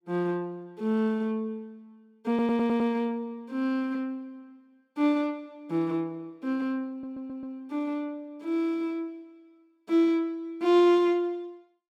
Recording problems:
audio stuttering; at 2.5 s and at 7 s

